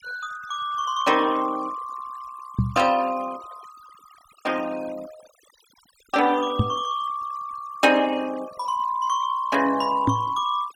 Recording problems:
denoising artefacts; signal-to-artefact ratio 21 dB
microphone thump; at 2.5 s, at 6.5 s and at 10 s; peak +7 dB vs average level

